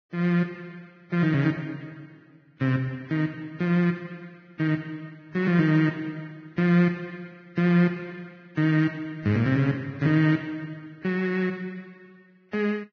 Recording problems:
lossy codec; Vorbis, log-spectral distance 2 dB, nothing above 6.3 kHz

